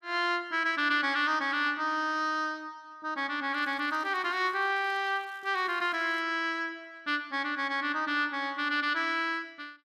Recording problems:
crackle; from 3.5 to 6 s; loose cable, SNR 29 dB

